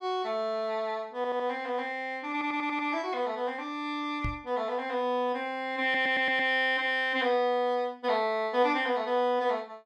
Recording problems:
stutter; at 1 s, at 2.5 s and at 6 s
microphone bump; at 4 s; peak -2 dB vs average level

